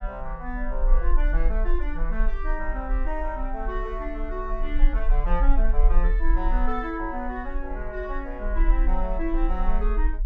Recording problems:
low-frequency rumble; below 38 Hz, strongest tone 20 Hz, SNR -4 dB

